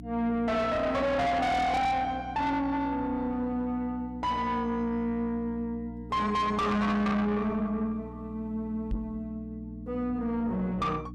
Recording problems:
distorted audio; soft clipping, signal-to-distortion ratio 5 dB
hum; 60 Hz, harmonics up to 300 Hz, SNR 14 dB
knock on the microphone; at 9 s; peak -1 dB vs average level

